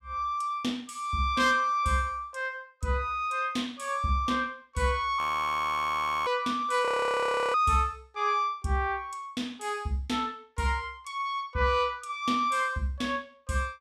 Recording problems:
frozen audio; at 5 s for 1 s and at 7 s for 0.5 s

